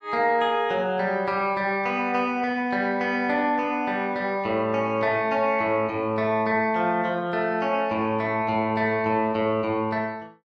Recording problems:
none

